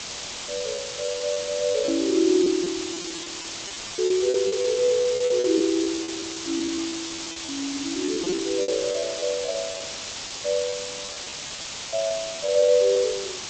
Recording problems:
lossy compression; G.722, log-spectral distance 19 dB
background hiss; SNR 7 dB
lost packets; 13% of the sound replaced, filled with repeated pitch periods

